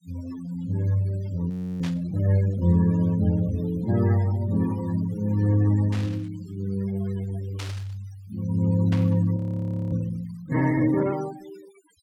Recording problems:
noise reduction artefacts; signal-to-artefact ratio 18 dB
audio freezing; at 1.5 s and at 9.5 s for 0.5 s
burst of static; 4 times, first at 2 s; peak -8 dB vs average level

